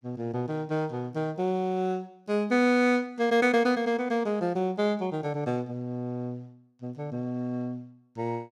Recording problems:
none

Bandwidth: 14.5 kHz